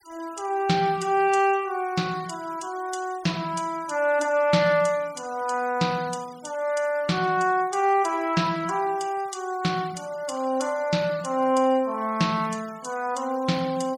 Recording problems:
noise reduction artefacts; signal-to-artefact ratio 22 dB

